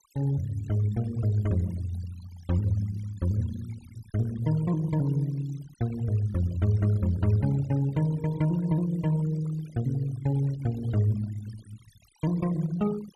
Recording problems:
noise reduction artefacts; signal-to-artefact ratio 20 dB

